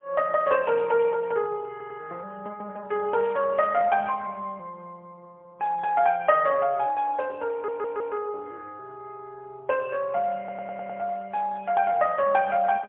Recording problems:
phone line; 300 Hz to 3.1 kHz, AMR-NB, then MP3
audio stuttering; at 1.5 s, at 7.5 s and at 10 s

